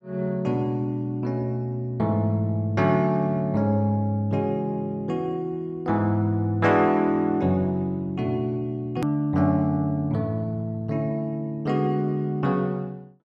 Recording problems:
click at an edit; at 9 s

